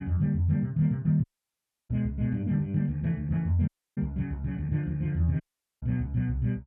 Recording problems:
dropout; at 1 s for 0.5 s, at 3.5 s and at 5.5 s

